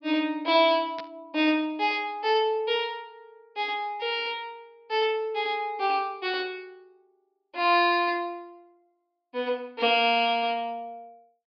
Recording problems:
low-pass filter; nothing above 5.5 kHz
burst of static; at 1 s; peak -10 dB vs average level

